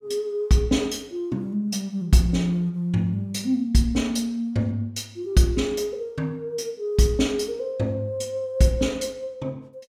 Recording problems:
none

